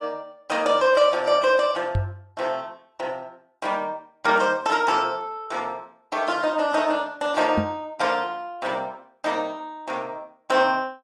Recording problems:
lossy codec; AAC, log-spectral distance 2 dB
knock on the microphone; at 2 s and at 7.5 s; peak +3 dB vs average level

